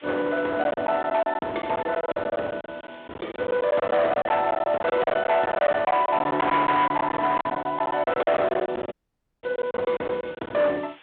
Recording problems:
phone line; 390 Hz to 3.5 kHz, G.726
distorted audio; hard clipping, uneven, signal-to-distortion ratio 11 dB
hiss; SNR 26 dB
packet loss; 15% of the sound replaced, filled with silence
audio cutting out; at 9 s for 0.5 s

